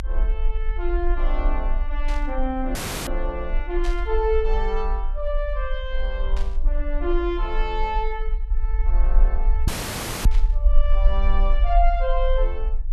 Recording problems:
low-frequency rumble; below 42 Hz, strongest tone 26 Hz, SNR -3 dB
burst of static; 4 times, first at 2 s; peak -6 dB vs average level
audio cutting out; at 3 s and at 9.5 s for 0.5 s

